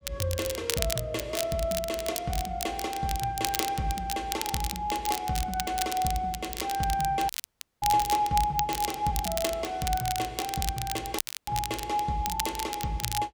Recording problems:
crackling; vinyl, SNR 5 dB
audio cutting out; at 7.5 s for 0.5 s and at 11 s

